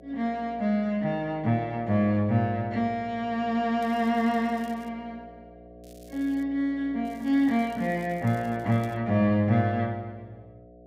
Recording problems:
hum; 60 Hz, harmonics up to 720 Hz, SNR 22 dB
crackling; from 4 to 5 s, at 6 s and from 7 to 9 s; loose cable, SNR 30 dB

